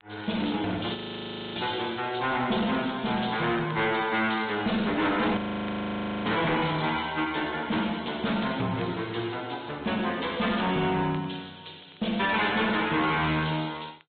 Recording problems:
treble missing; nothing above 4 kHz
lossy compression; Vorbis, log-spectral distance 5 dB
distortion; hard clipping, uneven, signal-to-distortion ratio 10 dB
crackle; vinyl, SNR 27 dB
audio freezing; at 1 s for 0.5 s and at 5.5 s for 1 s

